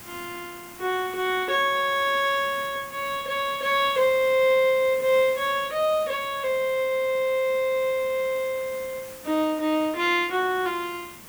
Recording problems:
hiss; slope -2 dB per octave, SNR 18 dB

